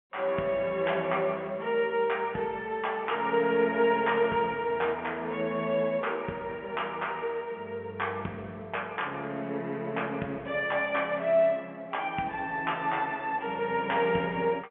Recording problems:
telephone audio; 240 Hz to 3.3 kHz, G.711

